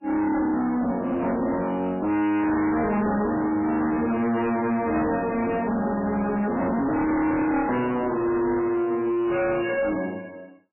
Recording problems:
codec artefacts; MP3, log-spectral distance 3 dB, nothing above 2.8 kHz
distortion; hard clipping, signal-to-distortion ratio 6 dB

